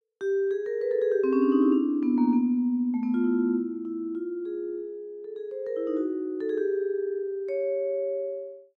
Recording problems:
none

